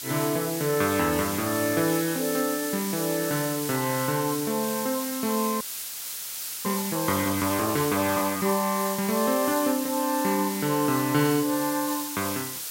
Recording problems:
hiss; slope +3 dB per octave, SNR 5 dB
audio freezing; at 5.5 s for 1 s

